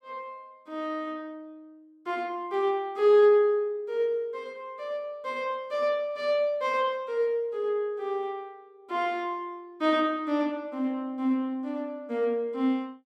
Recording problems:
none

